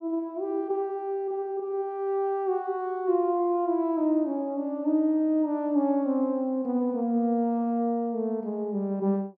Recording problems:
none

